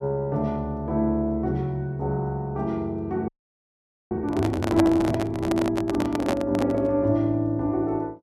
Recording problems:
audio freezing; at 3.5 s for 1 s
handling noise; from 4.5 to 7 s; peak +5 dB vs average level

